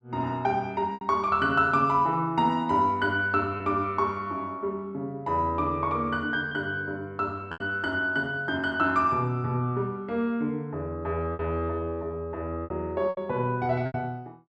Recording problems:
lost packets; 4% of the sound replaced, filled with repeated pitch periods

